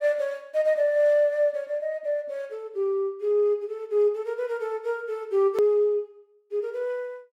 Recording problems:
hard cut with a click; at 5.5 s

